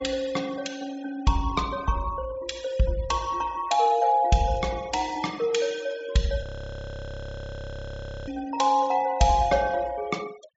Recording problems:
treble missing; nothing above 8 kHz
denoising artefacts; signal-to-artefact ratio 21 dB
frozen audio; at 6.5 s for 2 s

